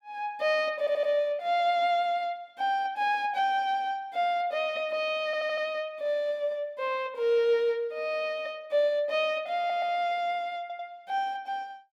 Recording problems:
stutter; 4 times, first at 1 s

